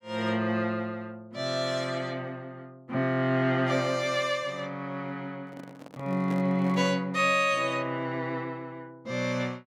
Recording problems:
handling noise; from 5.5 to 7 s; peak -7 dB vs average level

